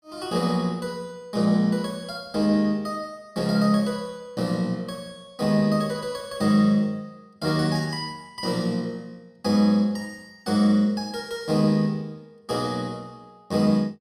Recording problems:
none

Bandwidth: 14.5 kHz